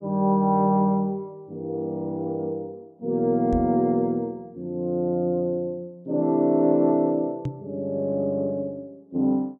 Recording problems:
microphone bump; at 3.5 s and at 7.5 s; peak -1 dB vs average level

